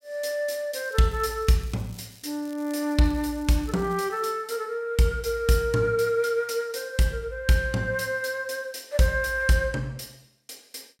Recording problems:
crackling; from 1 to 4.5 s; loose cable, SNR 25 dB

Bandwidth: 16 kHz